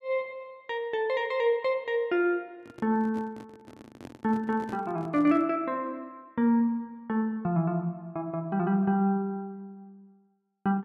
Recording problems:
microphone handling noise; from 2.5 to 5.5 s; peak -10 dB vs average level

